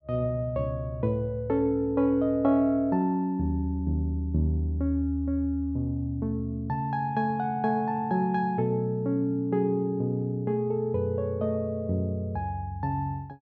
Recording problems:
none

